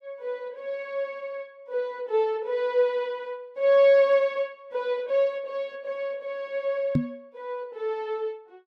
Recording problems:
microphone bump; at 7 s; peak +6 dB vs average level

